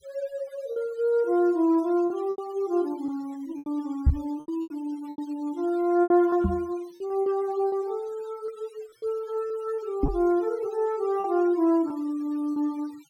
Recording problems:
noise reduction artefacts; signal-to-artefact ratio 25 dB
lost packets; 8% of the sound replaced, filled with repeated pitch periods
microphone bump; at 4 s, at 6.5 s and at 10 s; peak +9 dB vs average level

